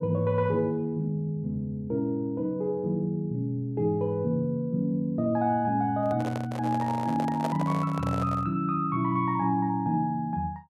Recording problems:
handling noise; from 6 to 8.5 s; peak -1 dB vs average level

